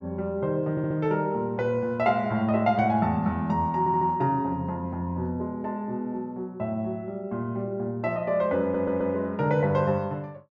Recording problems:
audio stuttering; at 0.5 s, at 4 s and at 8.5 s

